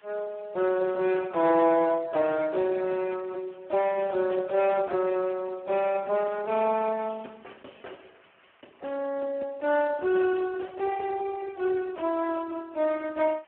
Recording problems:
phone line; 240 Hz to 2.9 kHz, Speex
hiss; SNR 32 dB

